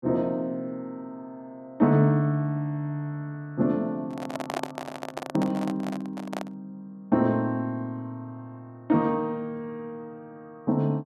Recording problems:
microphone handling noise; from 4 to 6.5 s; peak +1 dB vs average level

